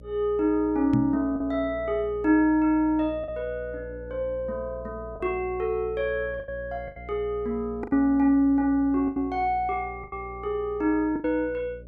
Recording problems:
hum; 60 Hz, harmonics up to 600 Hz, SNR 18 dB
packet loss; 5% of the sound replaced, filled with the last packet
microphone bump; at 1 s; peak +3 dB vs average level

